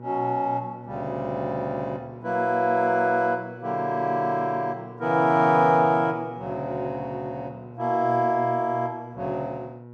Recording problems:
mains hum; 60 Hz, harmonics up to 1.1 kHz, SNR 17 dB

